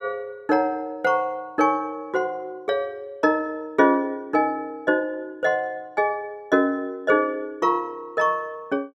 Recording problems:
none

